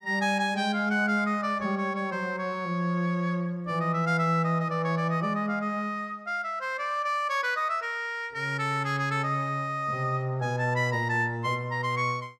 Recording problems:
none

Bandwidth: 14 kHz